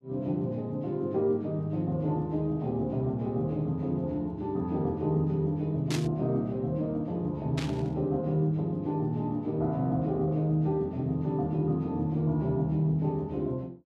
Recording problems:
static burst; at 6 s and at 7.5 s; peak -2 dB vs average level

